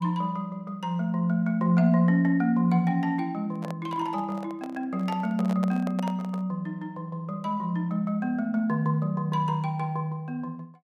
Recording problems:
microphone handling noise; from 3.5 to 6.5 s; peak -5 dB vs average level

